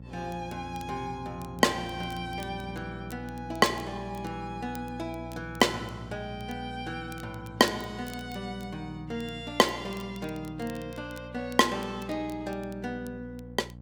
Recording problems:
hum; 60 Hz, harmonics up to 780 Hz, SNR 13 dB
crackling; vinyl, SNR 23 dB

